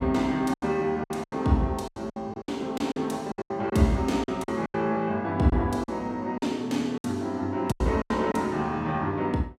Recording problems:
lost packets; 12% of the sound replaced, filled with silence

